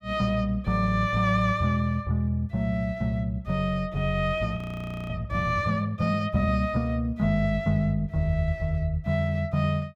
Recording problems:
frozen audio; at 4.5 s for 0.5 s

